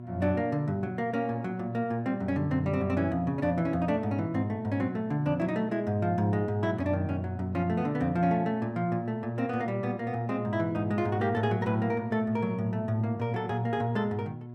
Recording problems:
hum; 60 Hz, harmonics up to 960 Hz, SNR 12 dB

